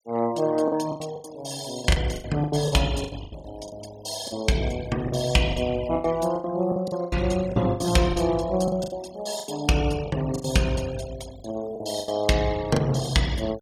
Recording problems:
denoising artefacts; signal-to-artefact ratio 17 dB
lost packets; 14% of the sound replaced, filled with the last packet

